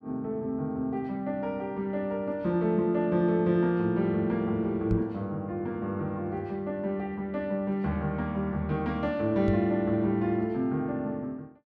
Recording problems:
microphone thump; at 5 s and at 9.5 s; peak +4 dB vs average level

